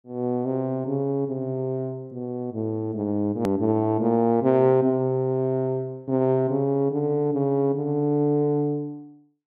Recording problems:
edit click; at 3.5 s

